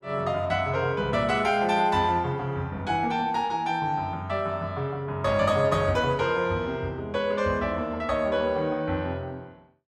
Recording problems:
none

